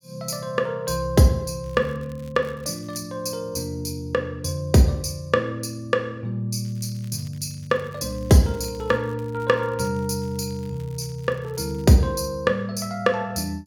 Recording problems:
crackling; from 1.5 to 3 s and from 6.5 to 12 s; loose cable, SNR 29 dB

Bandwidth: 18 kHz